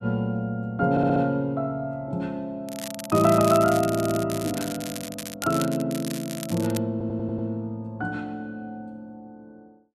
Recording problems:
stutter; at 1 s, at 4 s and at 7 s
crackle; from 2.5 to 7 s; loose cable, SNR 11 dB

